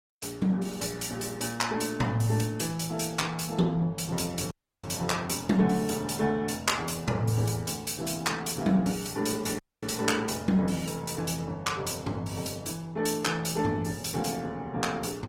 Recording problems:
codec artefacts; Opus, log-spectral distance 5 dB, nothing above 16 kHz
audio cutting out; at 4.5 s and at 9.5 s

